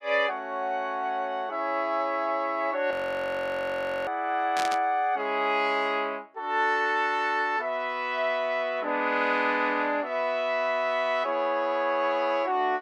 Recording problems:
audio freezing; at 3 s for 1 s
burst of static; at 4.5 s; peak -2 dB vs average level

